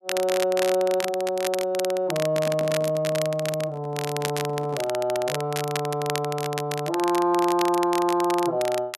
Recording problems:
crackling; vinyl, SNR 9 dB
handling noise; from 2 to 5 s; peak -9 dB vs average level

